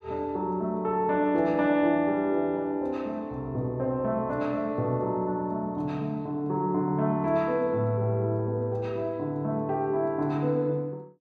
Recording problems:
none

